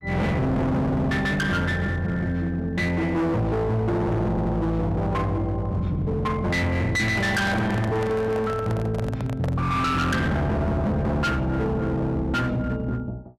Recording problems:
distortion; hard clipping, signal-to-distortion ratio 7 dB
stutter; at 4.5 s
microphone handling noise; from 7 to 9.5 s; peak -4 dB vs average level

